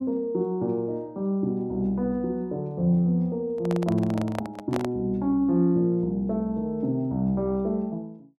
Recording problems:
microphone handling noise; from 3.5 to 5 s; peak -1 dB vs average level

